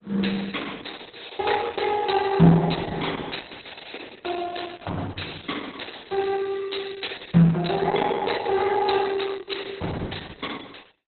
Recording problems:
codec artefacts; Opus, log-spectral distance 10 dB, nothing above 4.1 kHz

